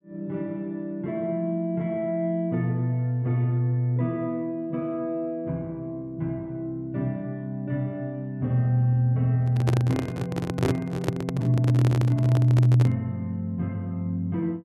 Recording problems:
microphone handling noise; from 9.5 to 13 s; peak +3 dB vs average level

